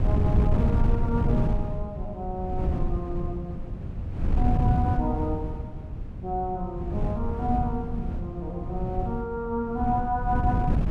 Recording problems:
wind on the microphone; below 140 Hz, SNR -2 dB

